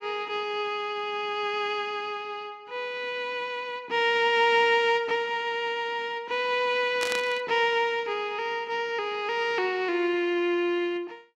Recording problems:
burst of static; at 7 s; peak -1 dB vs average level

